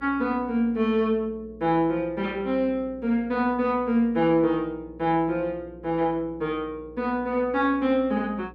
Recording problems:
hum; 60 Hz, harmonics up to 540 Hz, SNR 23 dB

